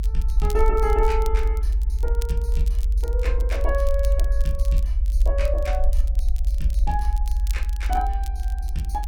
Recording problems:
low-frequency rumble; below 56 Hz, strongest tone 46 Hz, SNR -5 dB
crackle; vinyl, SNR 17 dB

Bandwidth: 17 kHz